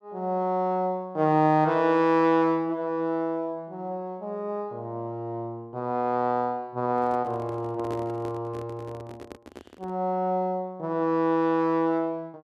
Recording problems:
microphone handling noise; from 7 to 10 s; peak -8 dB vs average level

